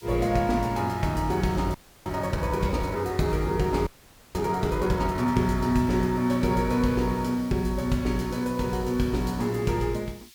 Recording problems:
background hiss; SNR 23 dB
audio freezing; at 1.5 s and at 4 s

